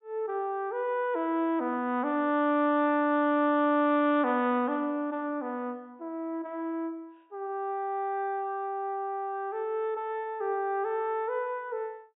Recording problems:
treble cut off; nothing above 4 kHz

